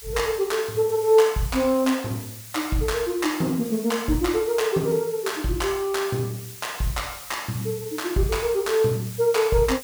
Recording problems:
background hiss; slope +2 dB per octave, SNR 14 dB

